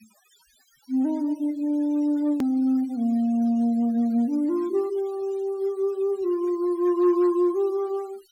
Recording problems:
denoising artefacts; signal-to-artefact ratio 26 dB
hard cut with a click; at 2.5 s

